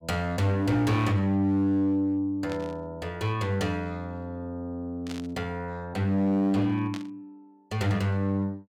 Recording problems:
distorted audio; hard clipping, uneven, signal-to-distortion ratio 12 dB
static burst; at 2.5 s, at 5 s and at 7 s; peak -9 dB vs average level

